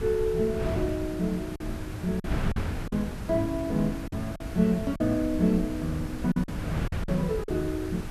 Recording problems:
hiss; slope 0 dB per octave, SNR 21 dB
wind noise; below 240 Hz, SNR 6 dB
lost packets; 6% of the sound replaced, filled with silence

